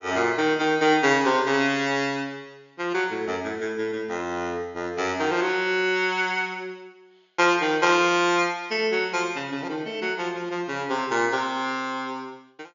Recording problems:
low-pass filter; nothing above 7.1 kHz

